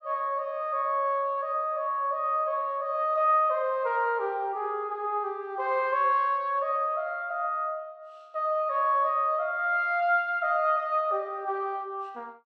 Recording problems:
none

